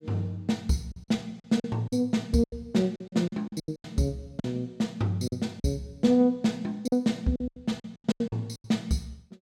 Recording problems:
packet loss; 12% of the sound replaced, filled with silence

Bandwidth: 16 kHz